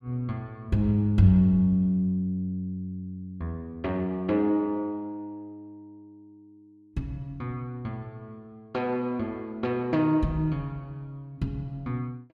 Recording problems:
none

